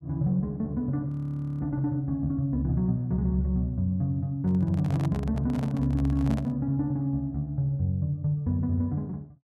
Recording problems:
frozen audio; at 1 s for 0.5 s
microphone handling noise; from 4.5 to 6.5 s; peak -7 dB vs average level

